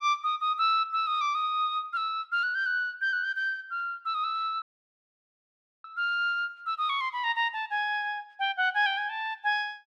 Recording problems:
dropout; at 4.5 s for 1 s

